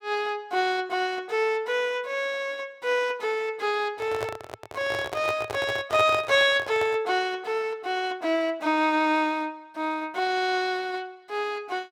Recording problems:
handling noise; from 4 to 7 s; peak -1 dB vs average level

